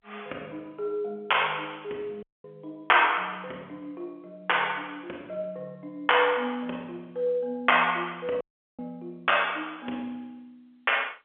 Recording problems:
phone line; 320 Hz to 3.4 kHz, G.711
dropout; at 2 s and at 8.5 s

